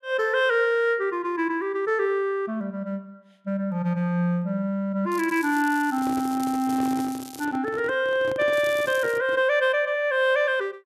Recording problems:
crackling; from 5 to 7.5 s and at 8.5 s; loose cable, SNR 19 dB
microphone handling noise; from 6 to 9.5 s; peak -7 dB vs average level

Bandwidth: 14 kHz